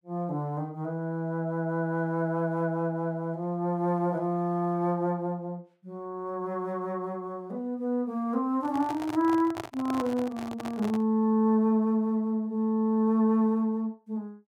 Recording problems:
handling noise; from 8.5 to 11 s; peak -3 dB vs average level

